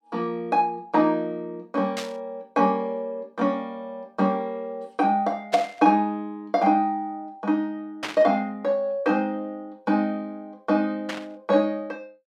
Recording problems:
static burst; 4 times, first at 2 s; peak -1 dB vs average level

